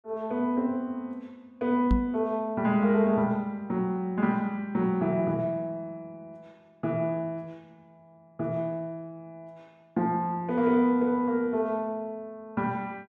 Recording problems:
microphone bump; at 2 s; peak +6 dB vs average level

